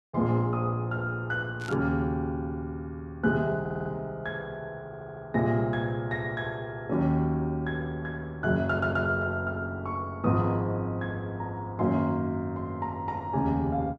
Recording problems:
static burst; at 1.5 s; peak -12 dB vs average level
audio stuttering; at 3.5 s, at 5 s and at 8.5 s

